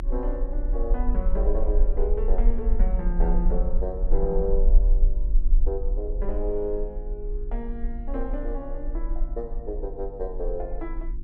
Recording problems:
electrical hum; 50 Hz, harmonics up to 350 Hz, SNR 13 dB
low-frequency rumble; below 40 Hz, strongest tone 26 Hz, SNR -4 dB

